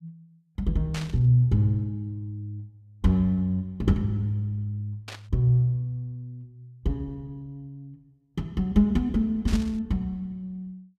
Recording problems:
static burst; at 1 s, at 5 s and at 9.5 s; peak -6 dB vs average level

